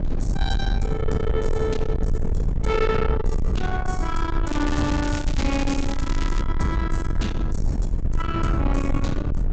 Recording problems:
low-pass filter; nothing above 8 kHz
distorted audio; soft clipping, signal-to-distortion ratio 8 dB
rumble; below 110 Hz, SNR 0 dB
crackle; from 4.5 to 6.5 s; loose cable, SNR 9 dB

